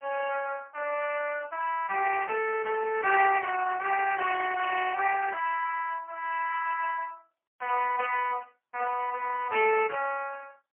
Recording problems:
phone line; 370 Hz to 2.7 kHz, AMR-NB, then MP3

